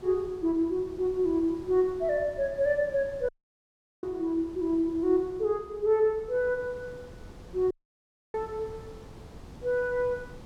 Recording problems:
wind noise; below 420 Hz, SNR 20 dB
dropout; at 3.5 s for 0.5 s and at 7.5 s for 0.5 s

